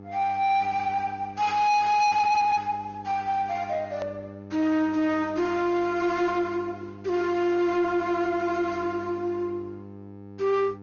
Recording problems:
treble missing; nothing above 6.3 kHz
codec artefacts; Opus, log-spectral distance 2 dB
distorted audio; soft clipping, signal-to-distortion ratio 8 dB
hum; 50 Hz, harmonics up to 1 kHz, SNR 18 dB
edit click; at 4 s

